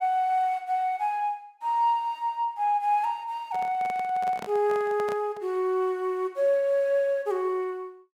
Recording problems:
microphone handling noise; from 3.5 to 5.5 s; peak -7 dB vs average level

